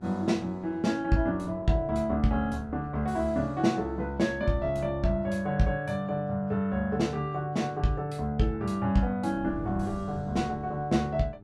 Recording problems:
mains hum; 50 Hz, harmonics up to 1.3 kHz, SNR 24 dB
wind on the microphone; below 210 Hz, SNR 17 dB

